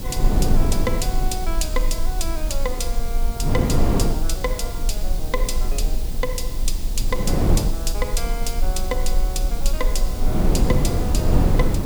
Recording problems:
background hiss; slope +4 dB per octave, SNR 9 dB
rumble; below 36 Hz, strongest tone 20 Hz, SNR -2 dB
wind noise; below 280 Hz, SNR -3 dB

